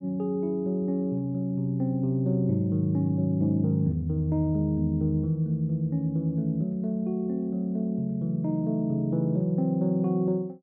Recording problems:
none

